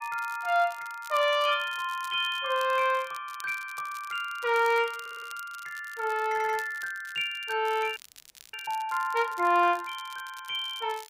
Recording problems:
crackling; vinyl, SNR 21 dB
stutter; at 5 s and at 6.5 s
frozen audio; at 8 s for 0.5 s

